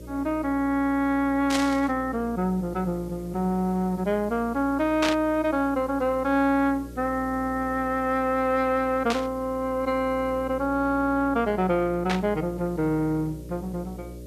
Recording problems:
hum; 60 Hz, harmonics up to 600 Hz, SNR 16 dB
background hiss; SNR 29 dB
static burst; 4 times, first at 1.5 s; peak +2 dB vs average level

